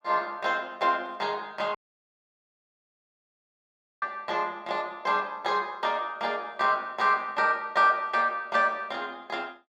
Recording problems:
dropout; at 2 s for 2.5 s

